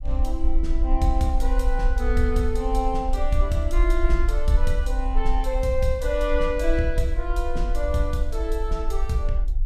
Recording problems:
rumble; below 46 Hz, strongest tone 20 Hz, SNR 0 dB

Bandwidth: 14.5 kHz